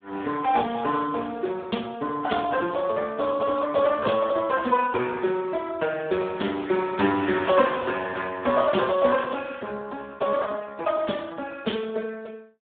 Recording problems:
telephone audio; 110 Hz to 3.7 kHz, Speex

